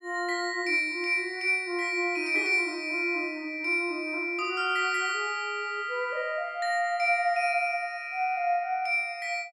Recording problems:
none

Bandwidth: 13 kHz